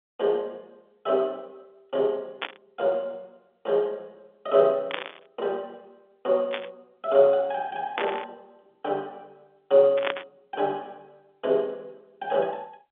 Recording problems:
telephone audio; 260 Hz to 3.7 kHz, G.711
burst of static; 5 times, first at 2.5 s; peak +2 dB vs average level

